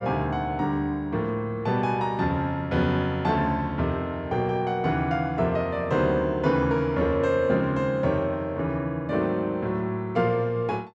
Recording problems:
none

